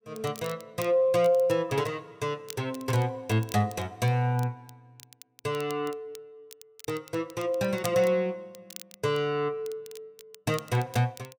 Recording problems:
crackling; vinyl, SNR 19 dB

